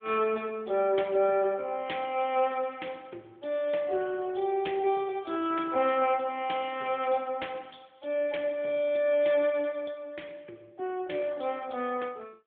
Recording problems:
telephone audio; 280 Hz to 3.5 kHz, AMR-NB

